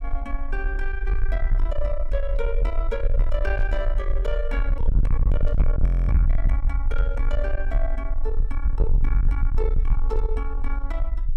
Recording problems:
distorted audio; soft clipping, signal-to-distortion ratio 6 dB
rumble; below 48 Hz, SNR -7 dB
static burst; 4 times, first at 3.5 s; peak -14 dB vs average level
audio freezing; at 6 s

